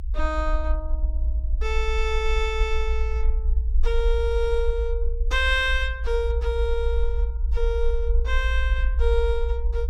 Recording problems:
rumble; below 58 Hz, SNR -1 dB

